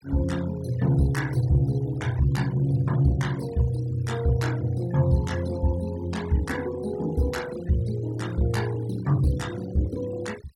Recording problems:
noise reduction artefacts; signal-to-artefact ratio 19 dB

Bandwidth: 17 kHz